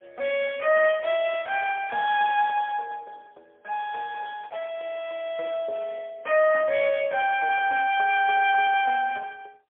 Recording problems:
telephone audio; 390 Hz to 3.3 kHz, AMR-NB, then MP3

